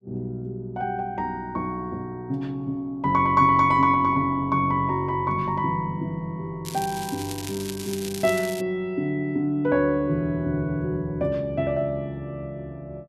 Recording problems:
crackling; from 6.5 to 8.5 s; loose cable, SNR 12 dB

